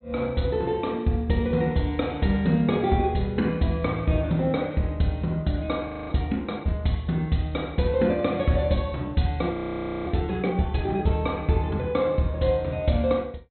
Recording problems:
treble missing; nothing above 4.2 kHz
audio freezing; at 6 s and at 9.5 s for 0.5 s

